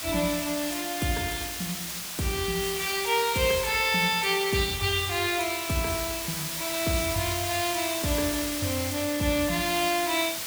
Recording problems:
background hiss; slope +2 dB per octave, SNR 4 dB

